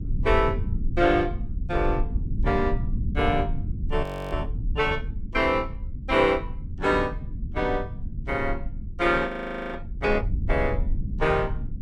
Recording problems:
rumble; below 92 Hz, SNR 5 dB
frozen audio; at 4 s and at 9.5 s

